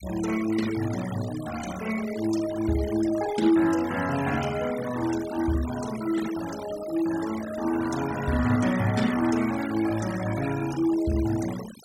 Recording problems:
denoising artefacts; signal-to-artefact ratio 13 dB

